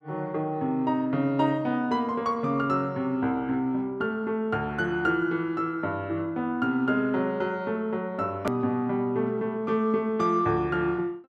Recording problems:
edit click; at 8.5 s

